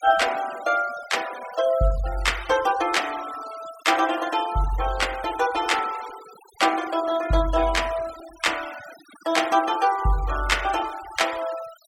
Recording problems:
noise reduction artefacts; signal-to-artefact ratio 16 dB

